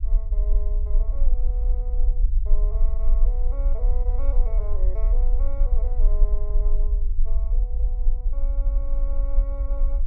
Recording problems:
low-frequency rumble; below 40 Hz, strongest tone 20 Hz, SNR -17 dB

